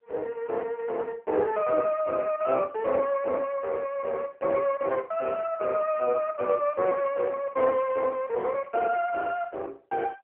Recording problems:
phone line; 340 Hz to 3.1 kHz, AMR-NB

